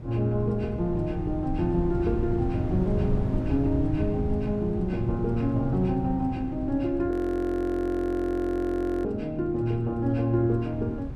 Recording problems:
wind on the microphone; below 130 Hz, SNR 7 dB
audio freezing; at 7 s for 2 s

